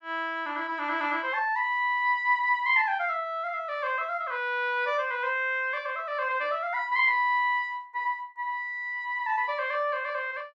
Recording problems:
none

